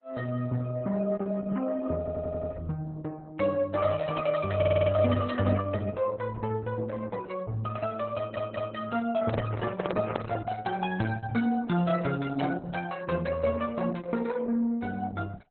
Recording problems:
lossy codec; MP3, then Opus, log-spectral distance 3 dB, nothing above 3.7 kHz
audio stuttering; at 2 s, at 4.5 s and at 8 s
handling noise; from 9 to 11 s; peak +3 dB vs average level

